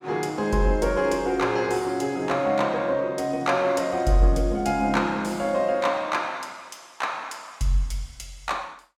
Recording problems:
none

